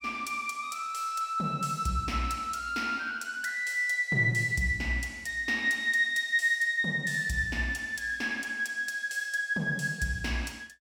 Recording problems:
none

